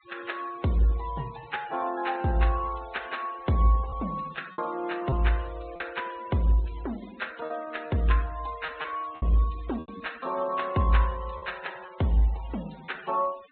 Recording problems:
treble cut off; nothing above 4 kHz
denoising artefacts; signal-to-artefact ratio 20 dB
lost packets; 4% of the sound replaced, filled with repeated pitch periods

